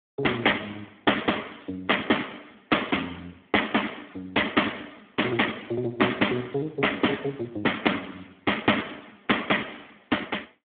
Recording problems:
telephone audio; 220 Hz to 3.5 kHz, Speex

